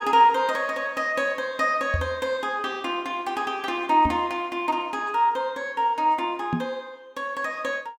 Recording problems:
microphone bump; at 2 s, at 4 s and at 6.5 s; peak +2 dB vs average level

